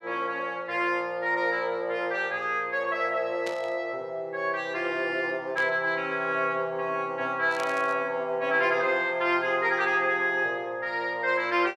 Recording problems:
static burst; at 3.5 s, at 5.5 s and at 7.5 s; peak -7 dB vs average level

